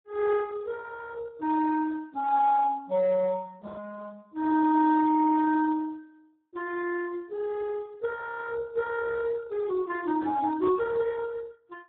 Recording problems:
telephone audio; 220 Hz to 2.1 kHz, Speex

